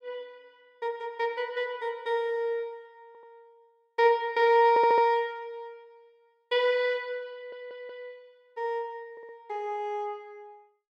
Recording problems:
audio stuttering; 4 times, first at 3 s

